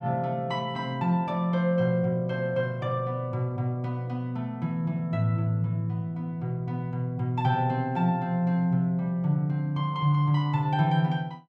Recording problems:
none

